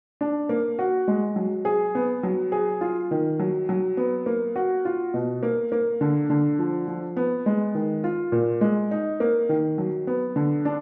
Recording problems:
treble cut off; nothing above 6.2 kHz

